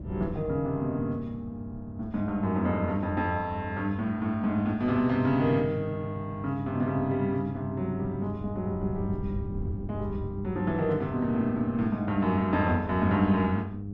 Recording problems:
mains hum; 50 Hz, harmonics up to 400 Hz, SNR 10 dB
wind noise; below 160 Hz, SNR 14 dB

